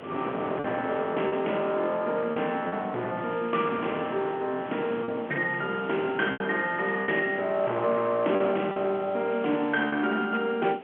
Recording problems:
telephone audio; 240 Hz to 3.3 kHz, G.711
distortion; hard clipping, signal-to-distortion ratio 12 dB
hiss; SNR 22 dB
wind on the microphone; below 850 Hz, SNR 13 dB
lost packets; 4% of the sound replaced, filled with repeated pitch periods

